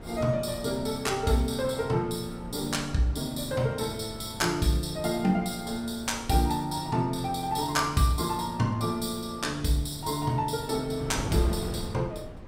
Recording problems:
wind noise; below 380 Hz, SNR 14 dB

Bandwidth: 16 kHz